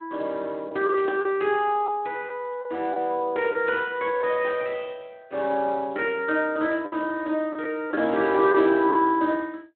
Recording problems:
phone line; 280 Hz to 3.5 kHz, Speex
packet loss; 4% of the sound replaced, filled with the last packet
static burst; at 1 s, at 4.5 s and at 8.5 s; peak -13 dB vs average level

